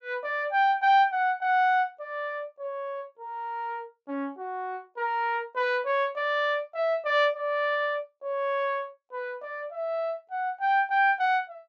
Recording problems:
treble cut off; nothing above 8 kHz

